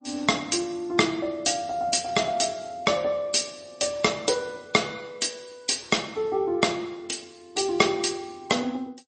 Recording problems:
codec artefacts; MP3, log-spectral distance 6 dB, nothing above 8.2 kHz

